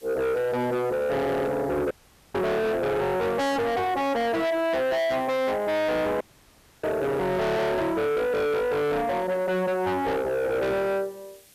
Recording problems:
distorted audio; soft clipping, signal-to-distortion ratio 6 dB
background hiss; SNR 27 dB
audio cutting out; at 2 s and at 6 s for 0.5 s

